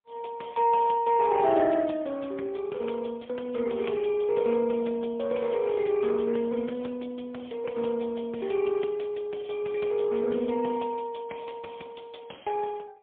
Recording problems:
phone line; 260 Hz to 3.4 kHz, AMR-NB, then MP3

